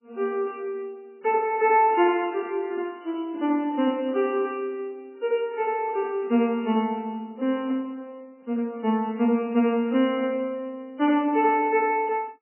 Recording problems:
lossy compression; MP3, log-spectral distance 2 dB, nothing above 2.9 kHz

